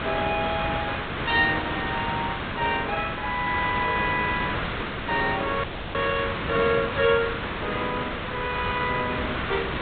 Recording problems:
low-pass filter; nothing above 4 kHz
hiss; SNR 3 dB
frozen audio; at 5.5 s

